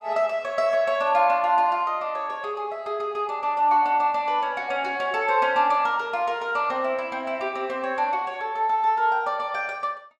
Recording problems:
none

